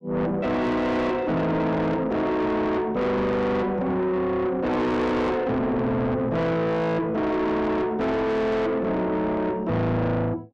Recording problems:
distortion; soft clipping, signal-to-distortion ratio 7 dB

